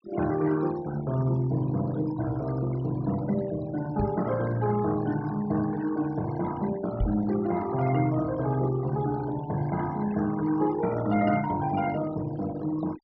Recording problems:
low-pass filter; nothing above 5.7 kHz
noise reduction artefacts; signal-to-artefact ratio 16 dB
knock on the microphone; at 4 s and at 7 s; peak +2 dB vs average level

